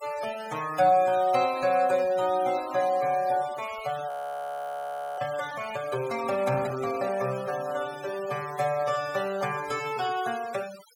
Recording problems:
denoising artefacts; signal-to-artefact ratio 17 dB
audio freezing; at 4 s for 1 s

